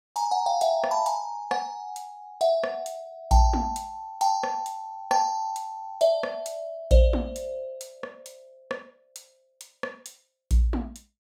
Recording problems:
none

